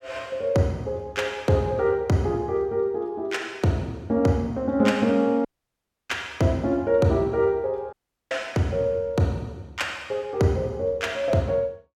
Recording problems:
audio cutting out; at 5.5 s for 0.5 s and at 8 s

